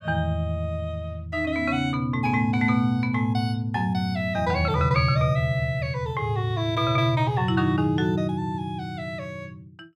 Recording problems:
none

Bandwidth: 15 kHz